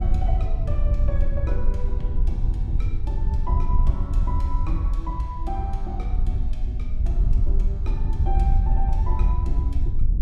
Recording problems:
wind on the microphone; below 64 Hz, SNR -11 dB

